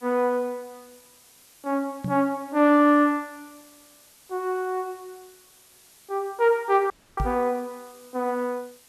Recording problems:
hiss; slope 0 dB per octave, SNR 27 dB
microphone thump; at 2 s and at 7 s; peak -1 dB vs average level
dropout; at 7 s

